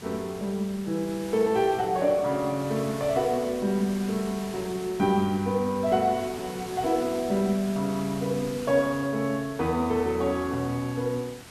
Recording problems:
background hiss; slope -2 dB per octave, SNR 15 dB

